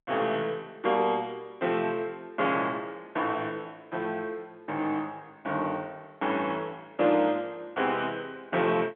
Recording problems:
telephone audio; 280 Hz to 3.6 kHz, G.711

